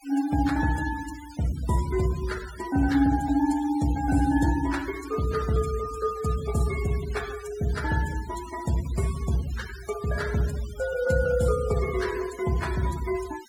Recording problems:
denoising artefacts; signal-to-artefact ratio 16 dB

